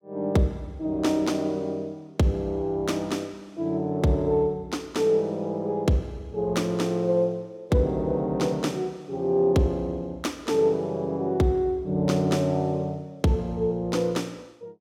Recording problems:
none

